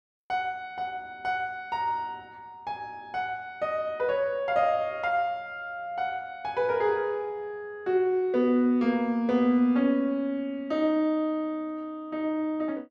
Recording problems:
none

